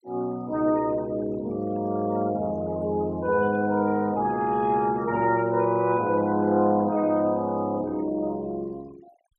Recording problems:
noise reduction artefacts; signal-to-artefact ratio 25 dB

